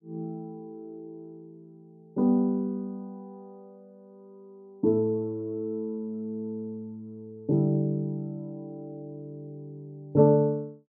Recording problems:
none

